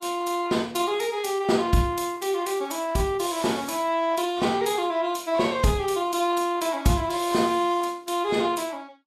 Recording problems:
lossy codec; Vorbis, log-spectral distance 4 dB, nothing above 13.1 kHz

